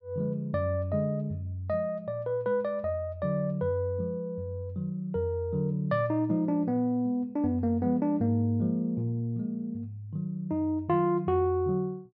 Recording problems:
none

